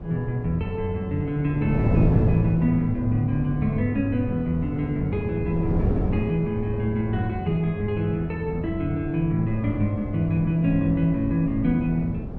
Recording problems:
wind on the microphone; below 260 Hz, SNR 6 dB

